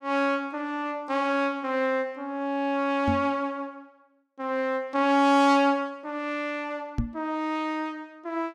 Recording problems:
microphone bump; at 3 s and at 7 s; peak +3 dB vs average level

